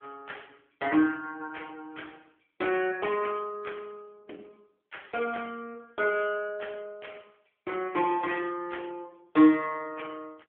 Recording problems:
phone line; 240 Hz to 3.3 kHz, AMR-NB

